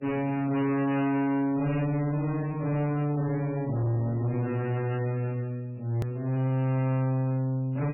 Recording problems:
lossy compression; MP3, log-spectral distance 2 dB, nothing above 2.5 kHz
distortion; soft clipping, signal-to-distortion ratio 7 dB
hard cut with a click; at 6 s

